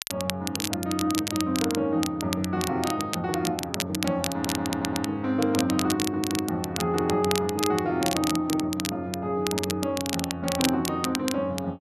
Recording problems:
crackle; vinyl, SNR 6 dB
stutter; at 4.5 s and at 6 s

